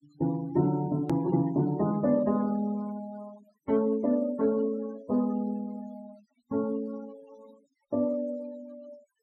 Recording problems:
denoising artefacts; signal-to-artefact ratio 22 dB
hard cut with a click; at 1 s

